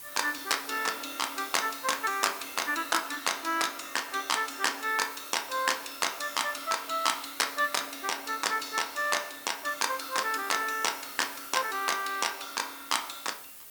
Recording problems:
background hiss; slope 0 dB per octave, SNR 13 dB

